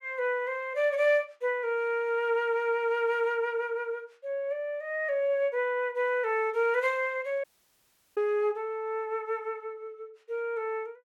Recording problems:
audio cutting out; at 7.5 s for 0.5 s

